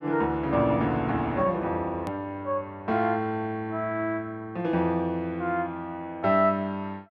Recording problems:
edit click; at 2 s

